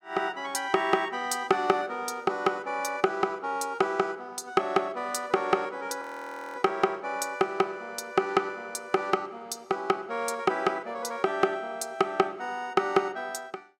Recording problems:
frozen audio; at 6 s for 0.5 s

